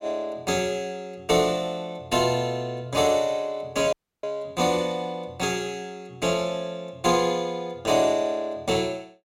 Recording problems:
audio cutting out; at 4 s

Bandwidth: 16.5 kHz